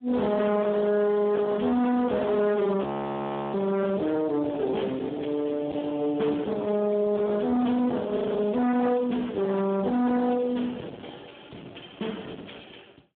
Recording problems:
telephone audio; 260 Hz to 2.1 kHz, Speex
distortion; hard clipping, uneven, signal-to-distortion ratio 6 dB
frozen audio; at 3 s for 0.5 s and at 8 s

